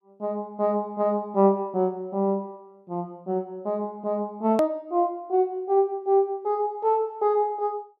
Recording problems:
hard cut with a click; at 4.5 s

